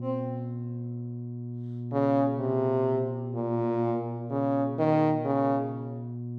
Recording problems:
hum; 60 Hz, harmonics up to 360 Hz, SNR 8 dB

